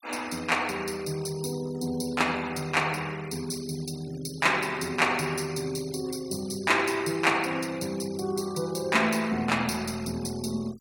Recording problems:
noise reduction artefacts; signal-to-artefact ratio 20 dB

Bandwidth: 17 kHz